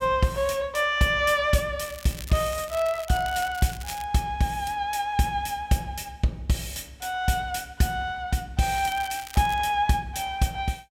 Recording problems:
crackling; from 2 to 4 s and at 8.5 s; loose cable, SNR 16 dB

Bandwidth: 16 kHz